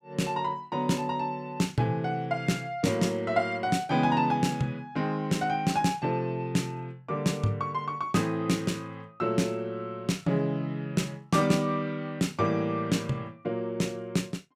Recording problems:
none

